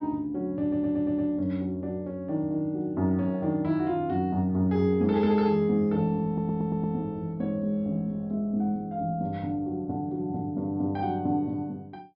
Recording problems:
treble missing; nothing above 5.5 kHz
audio stuttering; at 0.5 s and at 6.5 s

